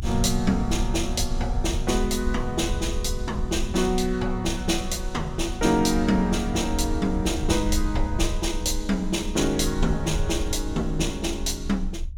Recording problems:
rumble; below 68 Hz, strongest tone 28 Hz, SNR 6 dB

